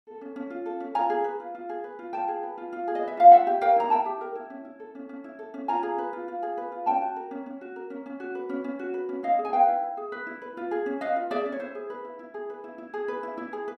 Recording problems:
none

